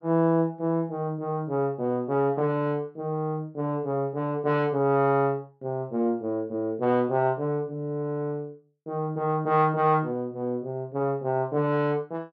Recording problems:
none

